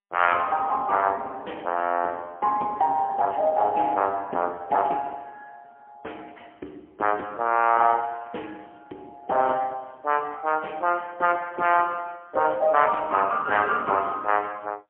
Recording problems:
telephone audio; 240 Hz to 3.2 kHz, AMR-NB, then MP3

